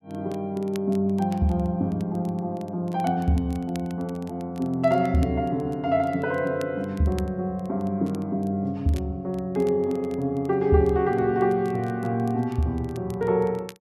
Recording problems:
crackle; vinyl, SNR 27 dB

